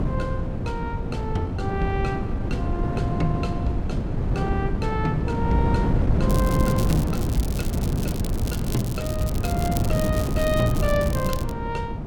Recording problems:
wind on the microphone; below 230 Hz, SNR -4 dB
crackle; from 6.5 to 12 s; loose cable, SNR 8 dB

